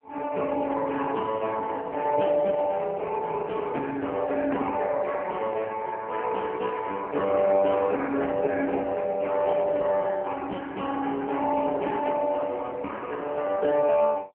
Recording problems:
telephone audio; 220 Hz to 3.1 kHz, AMR-NB

